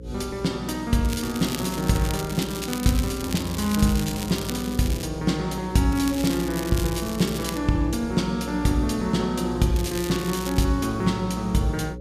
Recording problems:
hum; 60 Hz, harmonics up to 540 Hz, SNR 13 dB
crackle; from 1 to 5 s, from 6 to 7.5 s and at 10 s; loose cable, SNR 10 dB

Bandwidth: 14.5 kHz